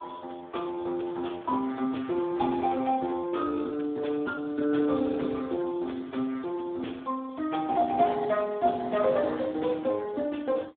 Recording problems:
phone line; 220 Hz to 3.7 kHz, Speex

